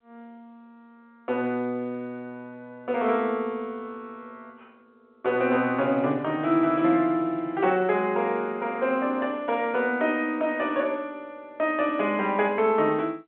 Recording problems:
telephone audio; 220 Hz to 3.5 kHz, G.711

